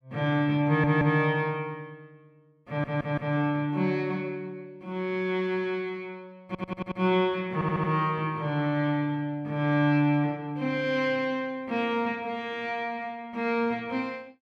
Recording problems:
audio stuttering; 4 times, first at 0.5 s

